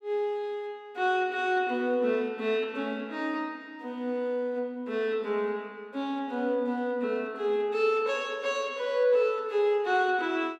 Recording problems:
none

